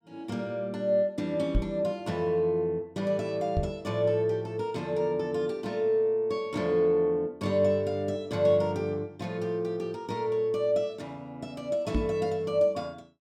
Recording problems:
knock on the microphone; at 1.5 s, at 3.5 s and at 12 s; peak +4 dB vs average level

